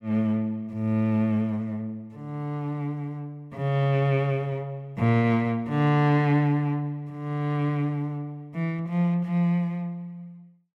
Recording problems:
none

